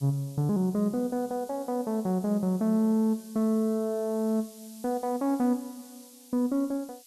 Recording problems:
hiss; slope +7 dB per octave, SNR 22 dB

